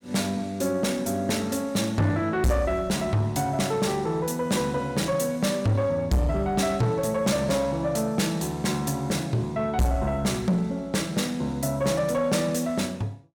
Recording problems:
distorted audio; soft clipping, signal-to-distortion ratio 8 dB

